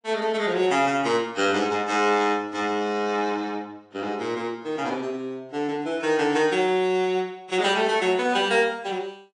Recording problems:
lossy compression; AAC, log-spectral distance 2 dB

